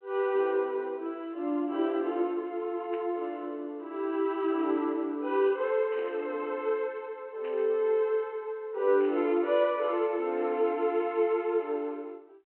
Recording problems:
telephone audio; 240 Hz to 3.1 kHz, G.726
static burst; 4 times, first at 3 s; peak -15 dB vs average level

